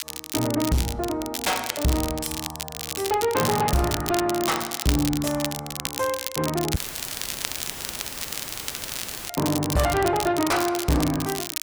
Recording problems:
distorted audio; soft clipping, signal-to-distortion ratio 6 dB
crackling; vinyl, SNR 6 dB
dropout; at 7 s for 2.5 s; filled with static

